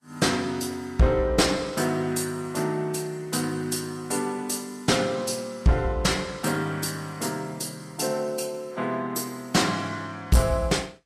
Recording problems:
codec artefacts; Vorbis, log-spectral distance 4 dB, nothing above 12.3 kHz
distortion; hard clipping, uneven, signal-to-distortion ratio 11 dB

